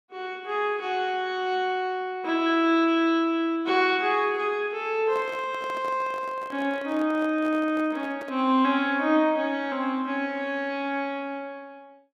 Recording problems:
handling noise; from 5 to 8.5 s; peak -11 dB vs average level

